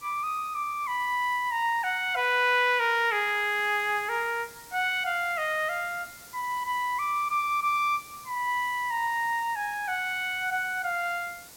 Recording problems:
background hiss; SNR 19 dB

